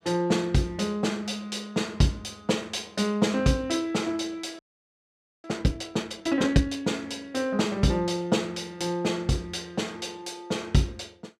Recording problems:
audio freezing; at 4.5 s for 1 s

